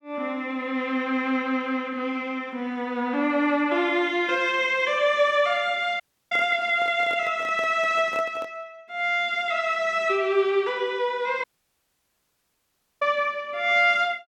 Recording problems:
handling noise; from 6 to 8.5 s; peak -11 dB vs average level
dropout; at 6 s and at 11 s for 1.5 s

